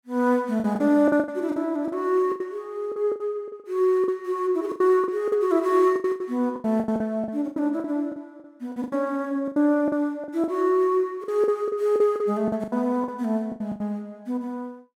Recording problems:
lost packets; 15% of the sound replaced, filled with the last packet

